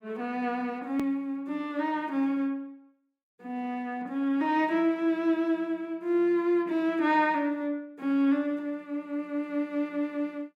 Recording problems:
edit click; at 1 s

